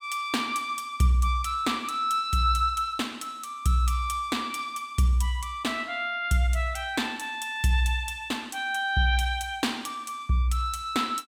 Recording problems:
none

